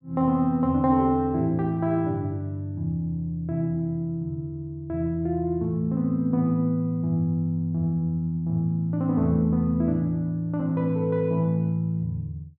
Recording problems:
none

